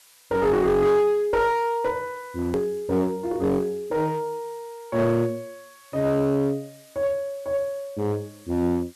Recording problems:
distortion; hard clipping, uneven, signal-to-distortion ratio 9 dB
hiss; slope +3 dB per octave, SNR 27 dB
hard cut with a click; at 2.5 s

